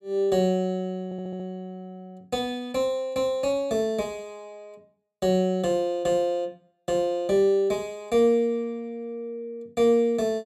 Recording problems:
audio stuttering; at 1 s

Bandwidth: 14.5 kHz